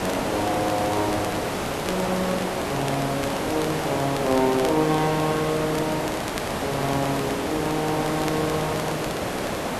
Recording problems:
hiss; slope -6 dB per octave, SNR 1 dB
crackle; vinyl, SNR 15 dB

